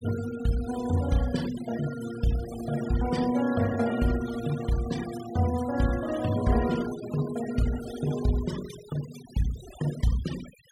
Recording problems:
noise reduction artefacts; signal-to-artefact ratio 14 dB

